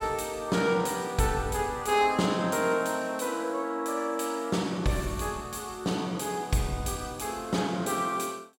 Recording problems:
none

